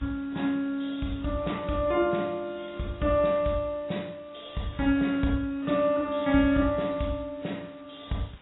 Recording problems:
lossy compression; AAC, log-spectral distance 12 dB, nothing above 3.8 kHz
background hiss; SNR 27 dB

